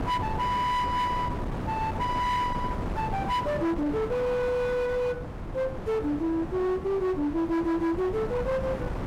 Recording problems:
distorted audio; hard clipping, signal-to-distortion ratio 11 dB
wind on the microphone; below 580 Hz, SNR 7 dB

